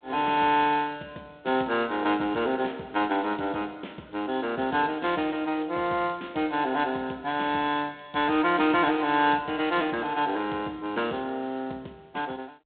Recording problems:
telephone audio; 220 Hz to 3.8 kHz, G.726

